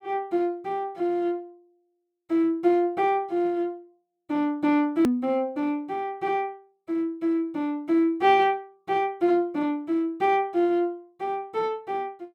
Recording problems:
edit click; at 5 s

